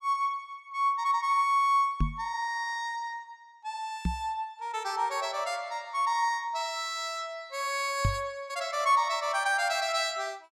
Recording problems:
microphone bump; at 2 s, at 4 s and at 8 s; peak +5 dB vs average level

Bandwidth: 16 kHz